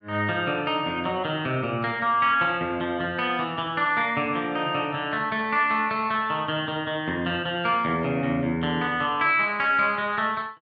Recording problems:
none

